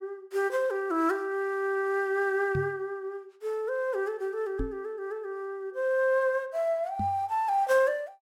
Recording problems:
microphone bump; at 2.5 s, at 4.5 s and at 7 s; peak -1 dB vs average level

